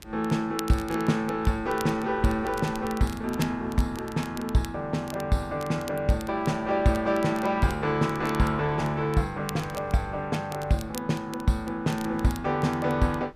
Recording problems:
wind noise; below 360 Hz, SNR 21 dB
crackle; vinyl, SNR 19 dB

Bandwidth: 14.5 kHz